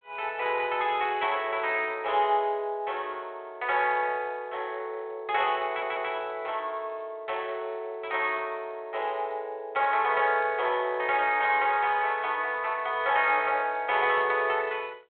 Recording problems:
phone line; 320 Hz to 3.4 kHz, G.726
stutter; at 5.5 s

